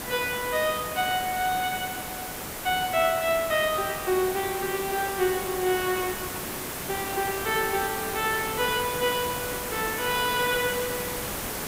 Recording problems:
hiss; slope -4 dB per octave, SNR 5 dB

